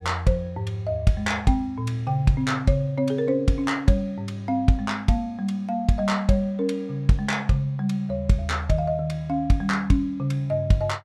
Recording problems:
none

